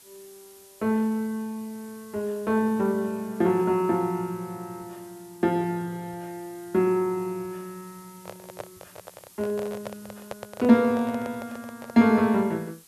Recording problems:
background hiss; SNR 25 dB
handling noise; from 8 to 12 s; peak -6 dB vs average level

